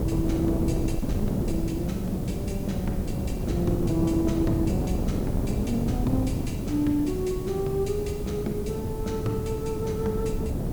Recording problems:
background hiss; slope -1 dB per octave, SNR 17 dB
wind on the microphone; below 270 Hz, SNR 0 dB

